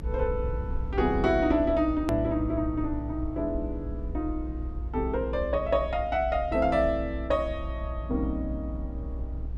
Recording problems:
low-frequency rumble; below 68 Hz, strongest tone 58 Hz, SNR 7 dB
click at an edit; at 2 s

